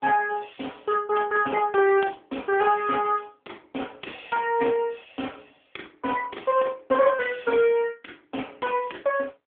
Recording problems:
telephone audio; 220 Hz to 3.4 kHz, AMR-NB

